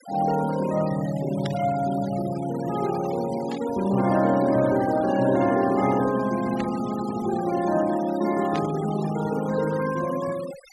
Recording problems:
denoising artefacts; signal-to-artefact ratio 16 dB
burst of static; 4 times, first at 1.5 s; peak -8 dB vs average level

